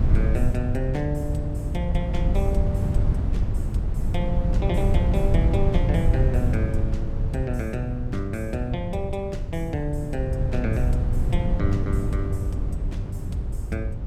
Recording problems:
hum; 50 Hz, harmonics up to 600 Hz, SNR 14 dB
wind noise; below 110 Hz, SNR -4 dB

